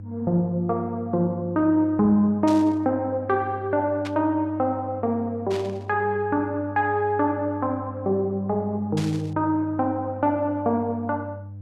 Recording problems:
electrical hum; 50 Hz, harmonics up to 500 Hz, SNR 14 dB
static burst; 4 times, first at 2.5 s; peak -8 dB vs average level

